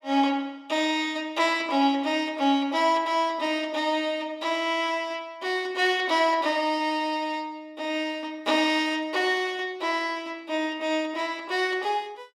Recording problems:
none

